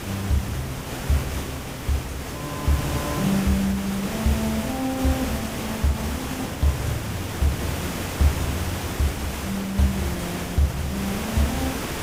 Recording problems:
background hiss; slope -4 dB per octave, SNR 4 dB

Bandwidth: 15.5 kHz